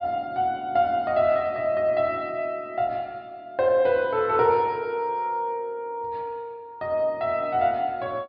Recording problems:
low-pass filter; nothing above 5.5 kHz

